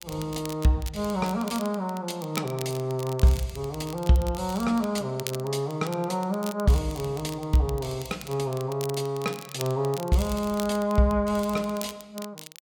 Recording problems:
crackle; vinyl, SNR 15 dB

